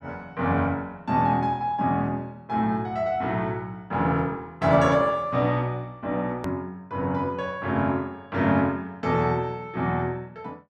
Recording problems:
edit click; at 6.5 s

